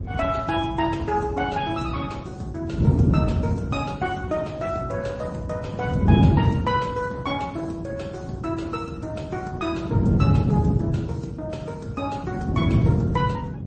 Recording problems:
codec artefacts; Opus, then MP3, log-spectral distance 2 dB, nothing above 8.2 kHz
wind on the microphone; below 200 Hz, SNR -5 dB

